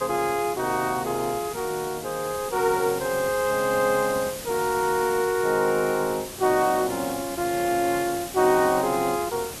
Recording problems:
hiss; slope -2 dB per octave, SNR 11 dB

